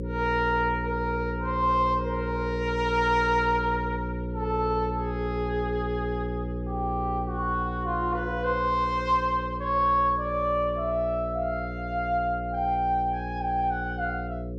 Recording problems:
electrical hum; 60 Hz, harmonics up to 540 Hz, SNR 6 dB

